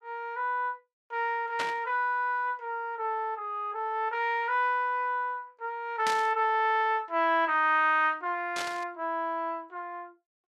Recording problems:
burst of static; at 1.5 s, at 6 s and at 8.5 s; peak -1 dB vs average level

